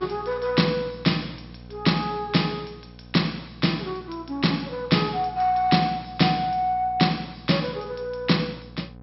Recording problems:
treble missing; nothing above 5.5 kHz
mains hum; 60 Hz, harmonics up to 1.3 kHz, SNR 20 dB

